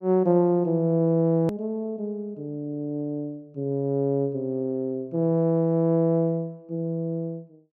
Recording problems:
edit click; at 1.5 s

